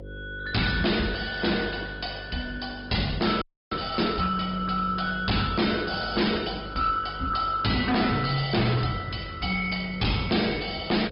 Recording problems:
treble cut off; nothing above 5.2 kHz
lossy compression; Opus, log-spectral distance 5 dB
distortion; hard clipping, uneven, signal-to-distortion ratio 7 dB
electrical hum; 50 Hz, harmonics up to 550 Hz, SNR 16 dB
frozen audio; at 3.5 s

